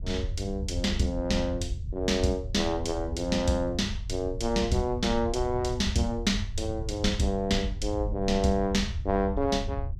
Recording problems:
low-frequency rumble; below 90 Hz, SNR 7 dB

